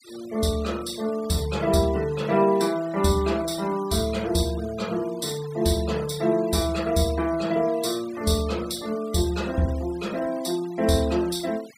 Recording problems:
denoising artefacts; signal-to-artefact ratio 19 dB

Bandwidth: 15.5 kHz